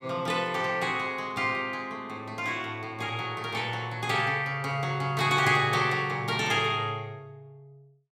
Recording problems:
none

